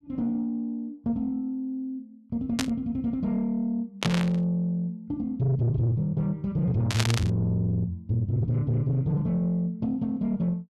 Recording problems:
distorted audio; soft clipping, signal-to-distortion ratio 11 dB
static burst; at 2.5 s, at 4 s and at 7 s; peak +5 dB vs average level

